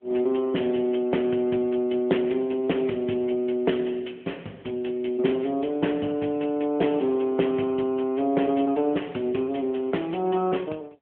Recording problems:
telephone audio; 150 Hz to 3.3 kHz, AMR-NB

